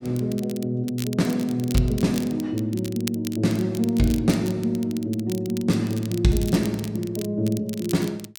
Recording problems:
crackling; vinyl, SNR 15 dB

